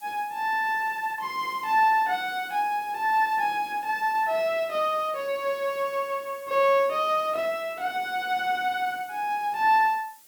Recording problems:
hiss; SNR 24 dB

